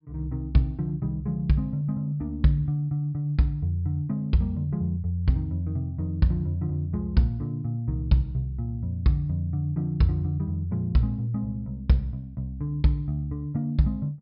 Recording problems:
treble missing; nothing above 5.2 kHz

